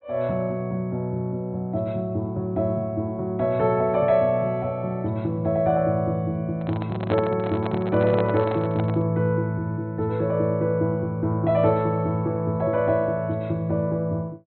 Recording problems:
treble cut off; nothing above 4.1 kHz
microphone handling noise; from 6.5 to 9 s; peak -2 dB vs average level

